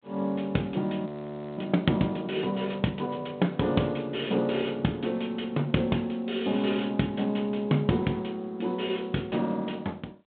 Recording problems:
phone line; 130 Hz to 3.6 kHz, G.726
frozen audio; at 1 s for 0.5 s

